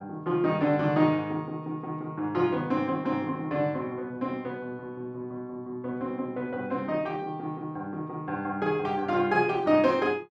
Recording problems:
none

